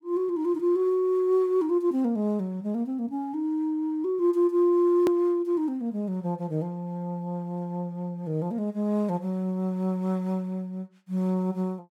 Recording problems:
edit click; at 5 s

